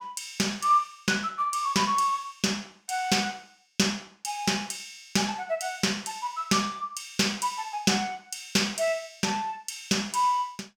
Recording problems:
none

